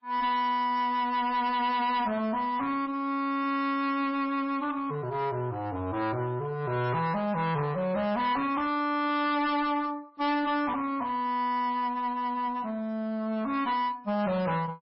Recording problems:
codec artefacts; MP3, log-spectral distance 2 dB, nothing above 5.3 kHz
distortion; hard clipping, uneven, signal-to-distortion ratio 9 dB

